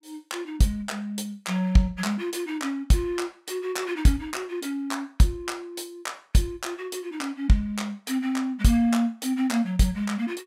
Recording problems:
none

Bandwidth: 16 kHz